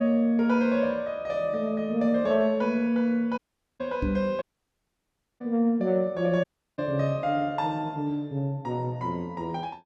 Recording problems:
audio cutting out; at 3.5 s, at 4.5 s for 1 s and at 6.5 s
knock on the microphone; at 4 s; peak +1 dB vs average level

